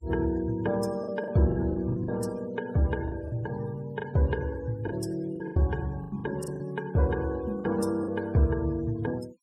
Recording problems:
noise reduction artefacts; signal-to-artefact ratio 21 dB
packet loss; 9% of the sound replaced, filled with the last packet

